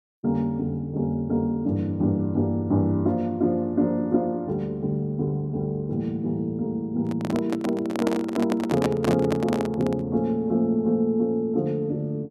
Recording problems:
handling noise; from 7 to 10 s; peak +3 dB vs average level

